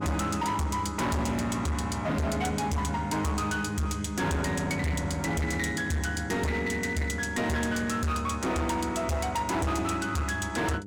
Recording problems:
distortion; hard clipping, uneven, signal-to-distortion ratio 6 dB
hum; 50 Hz, harmonics up to 600 Hz, SNR 11 dB

